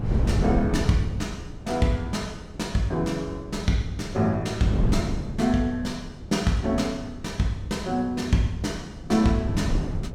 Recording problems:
wind on the microphone; below 200 Hz, SNR 6 dB

